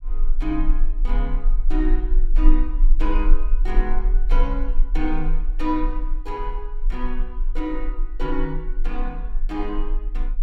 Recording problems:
rumble; below 32 Hz, strongest tone 20 Hz, SNR -5 dB

